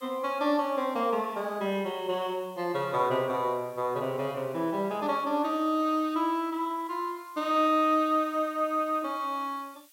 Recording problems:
hiss; slope +4 dB per octave, SNR 27 dB

